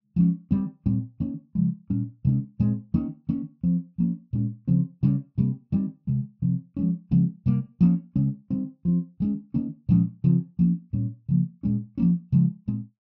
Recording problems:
treble missing; nothing above 6.6 kHz

